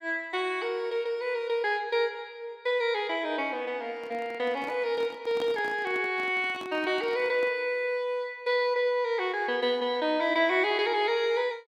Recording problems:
handling noise; from 4 to 7.5 s; peak -7 dB vs average level

